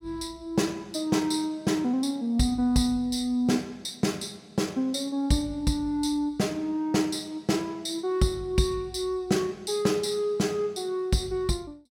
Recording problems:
none

